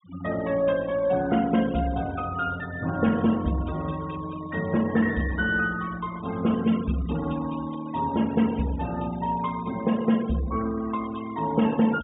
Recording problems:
low-pass filter; nothing above 3.5 kHz
denoising artefacts; signal-to-artefact ratio 18 dB

